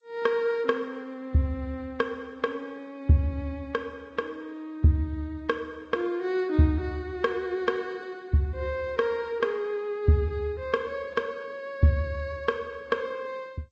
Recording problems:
lossy compression; G.722, then Vorbis, log-spectral distance 2 dB, nothing above 8 kHz

